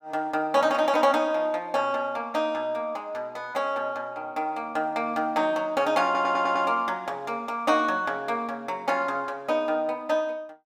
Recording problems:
stutter; at 6 s

